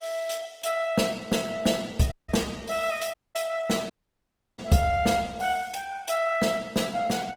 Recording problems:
codec artefacts; Opus, log-spectral distance 5 dB, nothing above 18.5 kHz
dropout; at 2 s, at 3 s and at 4 s for 0.5 s

